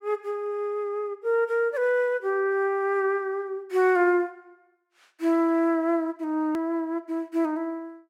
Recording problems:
click at an edit; at 6.5 s

